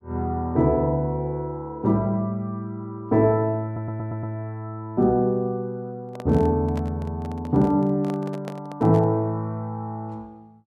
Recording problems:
audio stuttering; at 3.5 s
microphone handling noise; from 6 to 9 s; peak -8 dB vs average level

